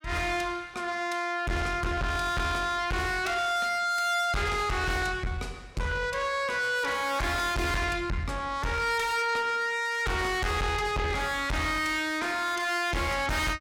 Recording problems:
distorted audio; soft clipping, signal-to-distortion ratio 6 dB

